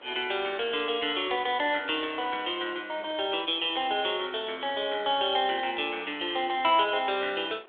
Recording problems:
phone line; 320 Hz to 3.8 kHz, G.726
wind noise; below 2 kHz, SNR 24 dB

